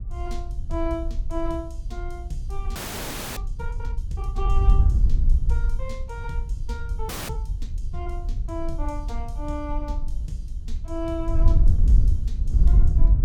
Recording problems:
wind noise; below 58 Hz, SNR -9 dB
audio freezing; at 3 s for 0.5 s and at 7 s

